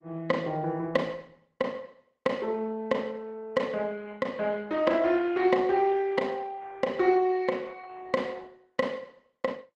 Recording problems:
codec artefacts; Opus, log-spectral distance 3 dB

